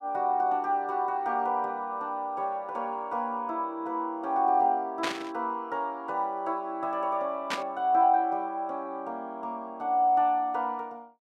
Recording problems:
static burst; at 5 s and at 7.5 s; peak +1 dB vs average level

